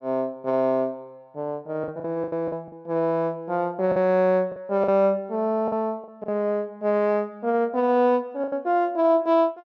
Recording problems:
lost packets; 6% of the sound replaced, filled with the last packet

